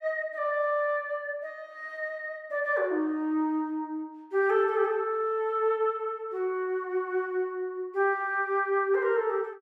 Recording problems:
none

